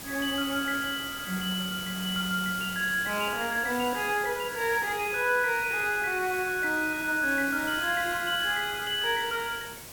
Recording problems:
hiss; slope -2 dB per octave, SNR 11 dB

